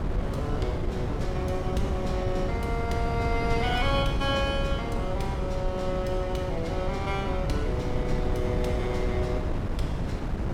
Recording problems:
wind noise; below 240 Hz, SNR -1 dB

